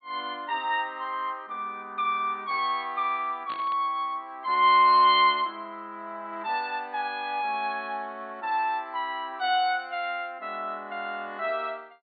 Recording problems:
low-pass filter; nothing above 4.4 kHz
static burst; at 3.5 s; peak -11 dB vs average level

